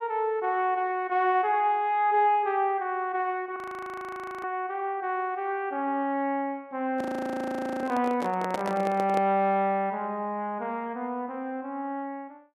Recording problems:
frozen audio; at 3.5 s for 1 s and at 7 s for 1 s
handling noise; from 7 to 9.5 s; peak 0 dB vs average level

